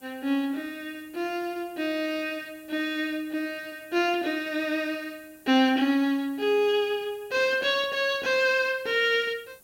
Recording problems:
background hiss; SNR 27 dB

